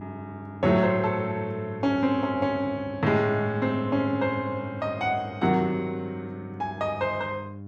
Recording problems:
hum; 50 Hz, harmonics up to 700 Hz, SNR 15 dB

